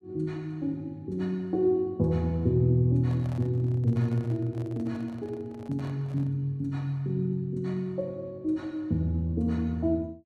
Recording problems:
handling noise; from 3 to 6.5 s; peak -12 dB vs average level

